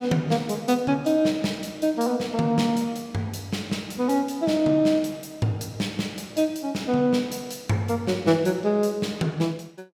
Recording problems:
none

